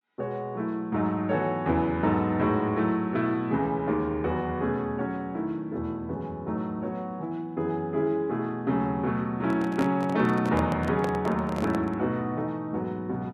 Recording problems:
handling noise; from 9.5 to 12 s; peak -2 dB vs average level

